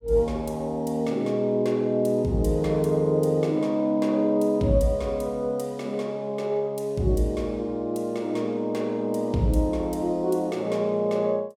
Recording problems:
none

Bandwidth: 17 kHz